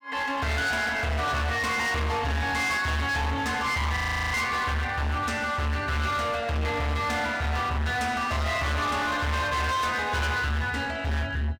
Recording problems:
distortion; hard clipping, signal-to-distortion ratio 7 dB
audio freezing; at 4 s

